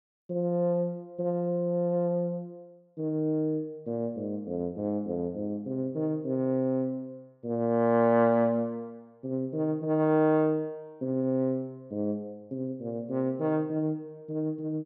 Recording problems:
none

